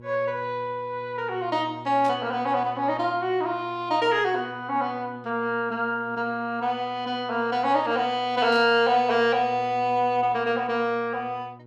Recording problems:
hum; 60 Hz, harmonics up to 960 Hz, SNR 21 dB
burst of static; at 2 s and at 8.5 s; peak -14 dB vs average level

